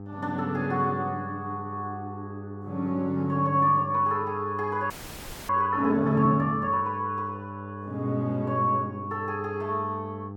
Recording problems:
hum; 50 Hz, harmonics up to 1.2 kHz, SNR 12 dB
audio freezing; at 5 s for 0.5 s

